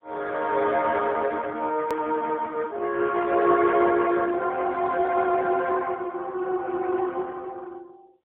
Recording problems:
phone line; 280 Hz to 2.7 kHz, AMR-NB, then MP3
edit click; at 2 s

